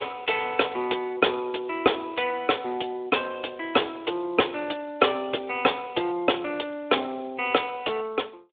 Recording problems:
phone line; 280 Hz to 3.7 kHz, Speex

